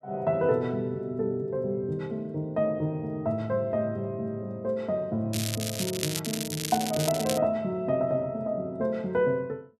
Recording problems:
crackle; from 5.5 to 7.5 s; loose cable, SNR 4 dB

